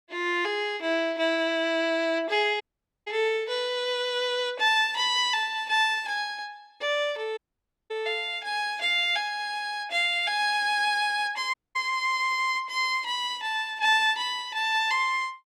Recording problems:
dropout; at 2.5 s, at 7.5 s for 0.5 s and at 12 s

